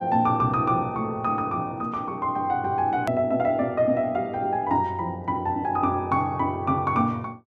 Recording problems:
edit click; at 3 s

